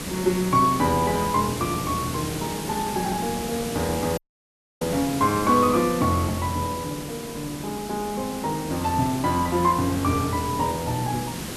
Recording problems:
background hiss; SNR 8 dB
dropout; at 4 s for 0.5 s

